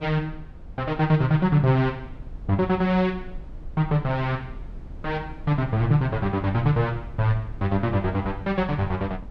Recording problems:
low-frequency rumble; below 76 Hz, SNR 17 dB

